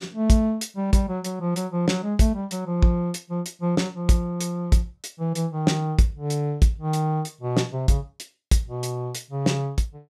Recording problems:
none

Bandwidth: 14.5 kHz